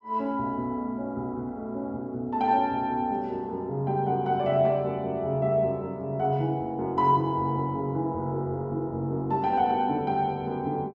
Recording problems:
none

